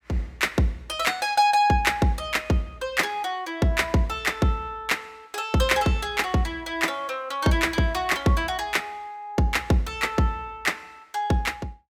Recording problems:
none

